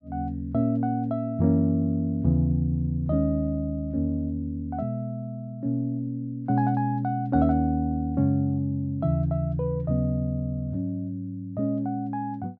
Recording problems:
none

